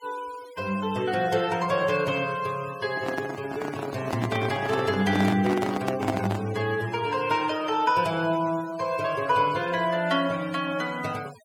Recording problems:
noise reduction artefacts; signal-to-artefact ratio 18 dB
microphone handling noise; from 3 to 6.5 s; peak +3 dB vs average level

